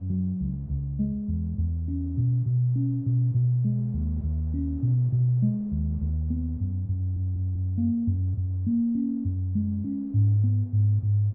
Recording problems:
wind on the microphone; below 430 Hz, SNR 29 dB
audio stuttering; at 7 s

